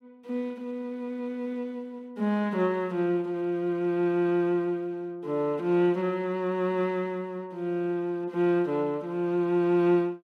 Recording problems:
none

